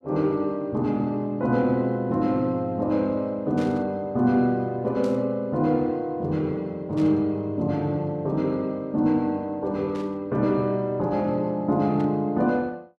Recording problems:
static burst; 5 times, first at 3.5 s; peak -14 dB vs average level

